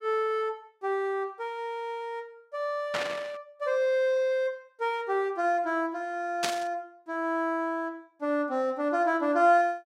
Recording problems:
static burst; at 3 s and at 6.5 s; peak +4 dB vs average level

